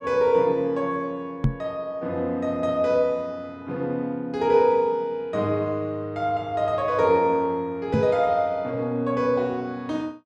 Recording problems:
microphone bump; at 1.5 s and at 8 s; peak +6 dB vs average level

